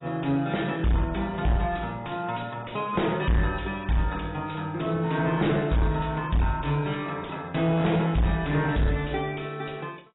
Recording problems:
codec artefacts; AAC, log-spectral distance 6 dB, nothing above 3.8 kHz
distortion; soft clipping, signal-to-distortion ratio 7 dB

